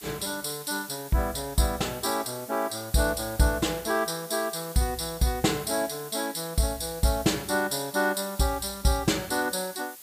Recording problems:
hiss; slope +1 dB per octave, SNR 14 dB

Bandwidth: 15 kHz